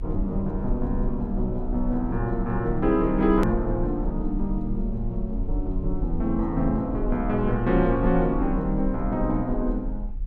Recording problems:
rumble; below 42 Hz, SNR 7 dB
hard cut with a click; at 3.5 s

